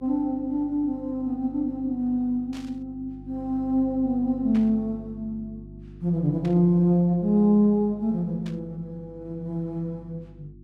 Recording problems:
electrical hum; 50 Hz, harmonics up to 350 Hz, SNR 20 dB
burst of static; 4 times, first at 2.5 s; peak -14 dB vs average level

